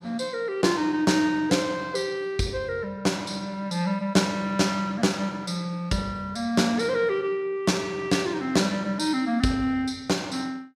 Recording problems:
none

